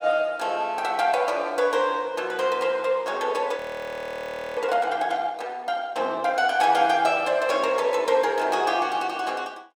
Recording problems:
audio freezing; at 3.5 s for 1 s

